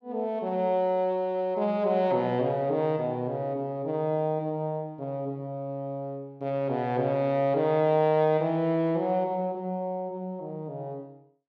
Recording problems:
none

